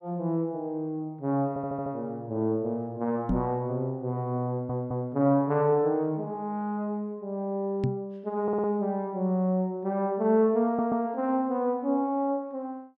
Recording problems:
audio stuttering; 4 times, first at 1.5 s
microphone thump; at 3.5 s and at 8 s; peak +4 dB vs average level

